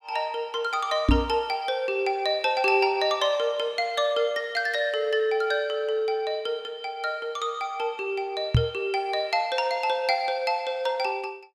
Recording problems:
microphone bump; at 1 s and at 8.5 s; peak +9 dB vs average level

